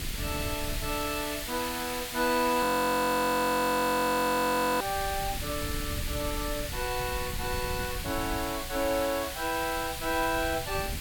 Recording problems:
hiss; SNR 6 dB
wind on the microphone; below 120 Hz, SNR 12 dB
audio freezing; at 2.5 s for 2 s

